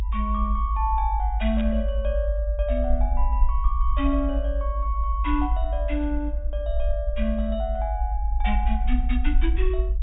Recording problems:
low-pass filter; nothing above 4 kHz
rumble; below 54 Hz, strongest tone 50 Hz, SNR -3 dB
static burst; at 1.5 s; peak -8 dB vs average level

